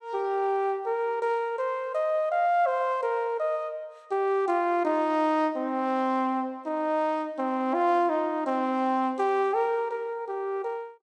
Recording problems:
none

